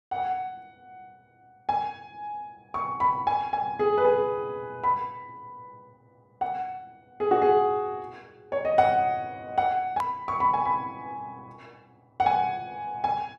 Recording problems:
hard cut with a click; at 10 s

